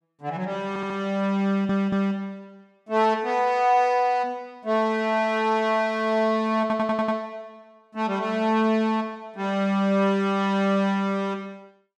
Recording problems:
audio stuttering; at 0.5 s, at 1.5 s and at 6.5 s

